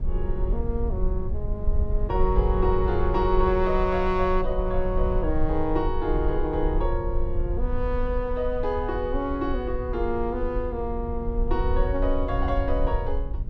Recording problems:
rumble; below 58 Hz, SNR 2 dB

